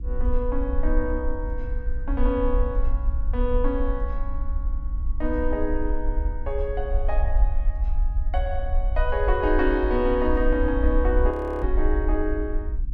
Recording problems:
hum; 60 Hz, harmonics up to 300 Hz, SNR 18 dB
low-frequency rumble; below 52 Hz, SNR 1 dB
frozen audio; at 11 s

